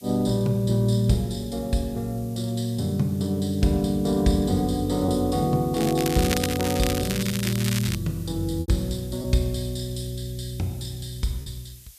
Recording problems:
hiss; SNR 22 dB
packet loss; 1.4% of the sound replaced, filled with repeated pitch periods
crackling; from 6 to 8 s; loose cable, SNR 6 dB

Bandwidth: 14.5 kHz